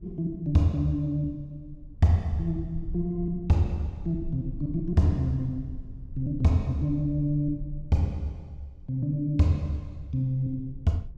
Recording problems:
low-frequency rumble; below 62 Hz, SNR 16 dB

